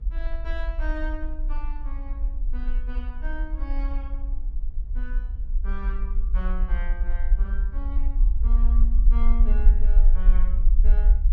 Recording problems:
rumble; below 44 Hz, SNR -14 dB
wind noise; below 92 Hz, SNR 11 dB

